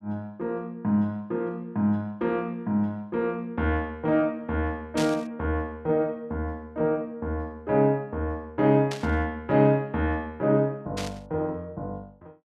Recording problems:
static burst; at 5 s, at 9 s and at 11 s; peak -2 dB vs average level

